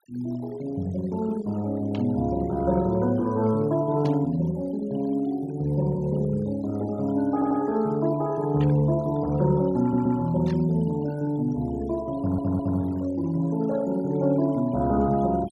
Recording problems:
noise reduction artefacts; signal-to-artefact ratio 23 dB
static burst; 4 times, first at 2 s; peak -12 dB vs average level
audio stuttering; at 7.5 s, at 10 s and at 12 s

